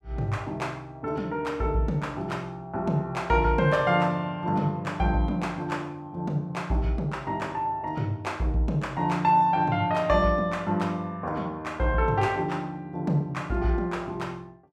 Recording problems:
none

